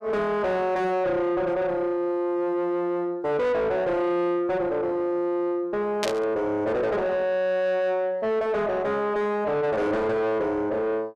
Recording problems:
distortion; soft clipping, signal-to-distortion ratio 7 dB
static burst; at 6 s; peak +1 dB vs average level

